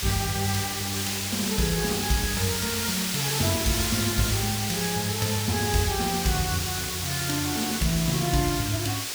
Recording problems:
background hiss; slope +2 dB per octave, SNR 0 dB

